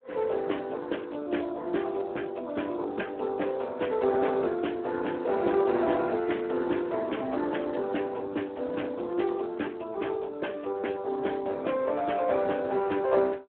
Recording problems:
phone line; 260 Hz to 3.4 kHz, Speex

